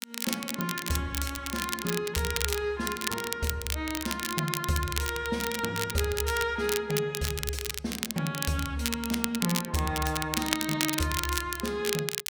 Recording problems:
crackle; vinyl, SNR 2 dB

